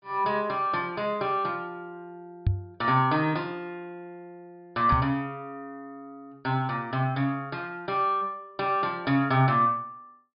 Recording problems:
treble cut off; nothing above 5.5 kHz
knock on the microphone; at 2.5 s and at 5 s; peak +6 dB vs average level

